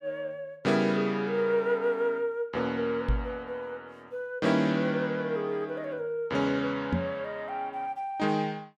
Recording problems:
microphone thump; at 3 s and at 7 s; peak +5 dB vs average level

